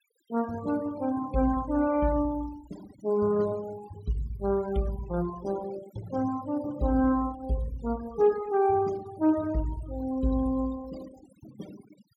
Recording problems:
noise reduction artefacts; signal-to-artefact ratio 19 dB

